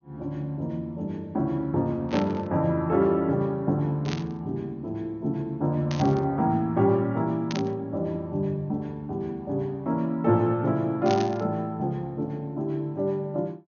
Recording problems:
low-pass filter; nothing above 6.5 kHz
static burst; 5 times, first at 2 s; peak -3 dB vs average level

